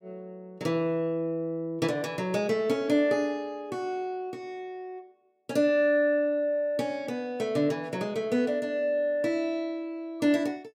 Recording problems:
none

